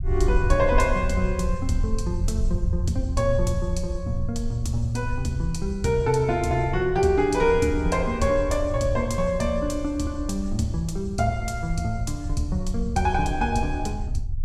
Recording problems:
low-frequency rumble; below 78 Hz, SNR 5 dB

